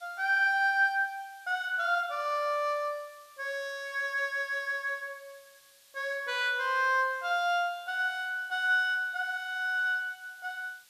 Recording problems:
hiss; slope +3 dB per octave, SNR 27 dB

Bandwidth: 14.5 kHz